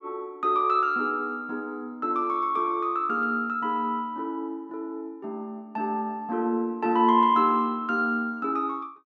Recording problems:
none

